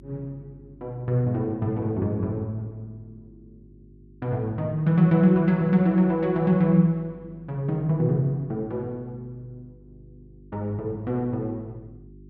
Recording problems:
hum; 50 Hz, harmonics up to 400 Hz, SNR 26 dB

